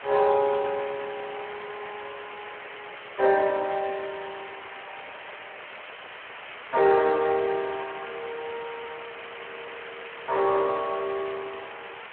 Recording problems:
phone line; 320 Hz to 2.5 kHz, Speex
hiss; SNR 13 dB

